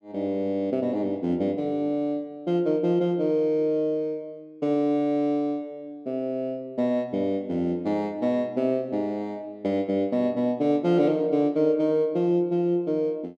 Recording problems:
none

